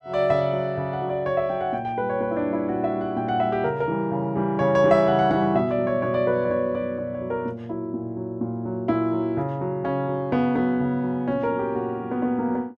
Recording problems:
none

